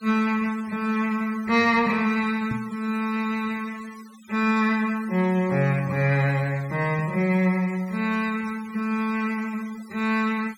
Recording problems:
denoising artefacts; signal-to-artefact ratio 22 dB
microphone bump; at 2.5 s; peak -2 dB vs average level

